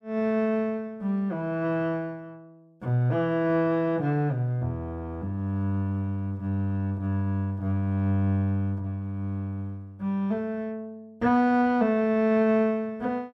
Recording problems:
none

